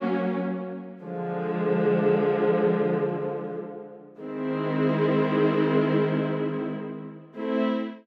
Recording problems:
none

